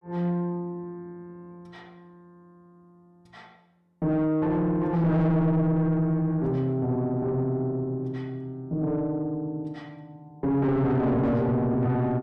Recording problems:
distortion; soft clipping, signal-to-distortion ratio 5 dB

